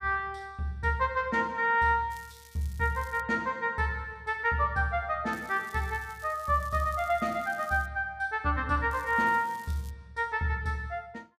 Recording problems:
crackling; from 2 to 3 s, from 5.5 to 8 s and from 9 to 10 s; loose cable, SNR 24 dB

